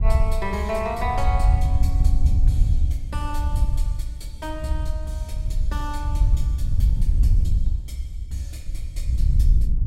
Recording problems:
wind noise; below 72 Hz, SNR -7 dB

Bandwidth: 16 kHz